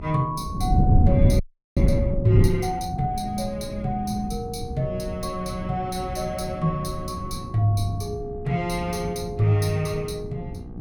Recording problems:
hum; 60 Hz, harmonics up to 1.2 kHz, SNR 16 dB
wind noise; below 160 Hz, SNR 2 dB
audio freezing; at 1.5 s

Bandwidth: 17.5 kHz